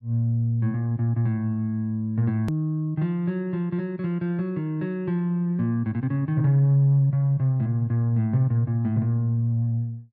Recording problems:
edit click; at 2.5 s

